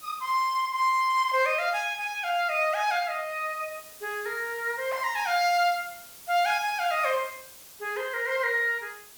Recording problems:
background hiss; slope 0 dB per octave, SNR 20 dB

